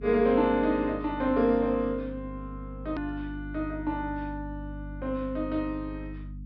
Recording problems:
treble missing; nothing above 5.5 kHz
hum; 50 Hz, harmonics up to 300 Hz, SNR 12 dB
edit click; at 3 s

